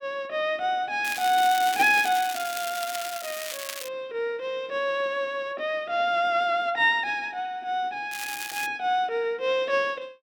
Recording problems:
crackle; from 1 to 4 s and at 8 s; loose cable, SNR 9 dB

